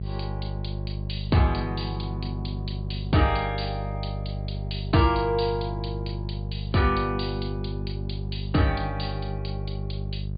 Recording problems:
treble cut off; nothing above 4.7 kHz
hum; 50 Hz, harmonics up to 400 Hz, SNR 4 dB

